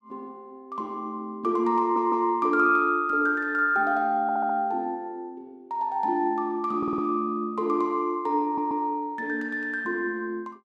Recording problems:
audio stuttering; 4 times, first at 2 s

